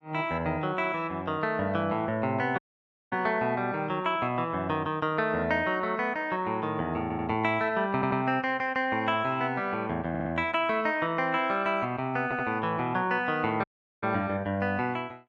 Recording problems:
dropout; at 2.5 s for 0.5 s and at 14 s
audio stuttering; 4 times, first at 7 s

